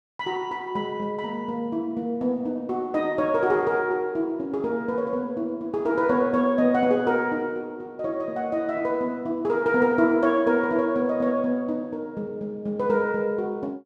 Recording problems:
none

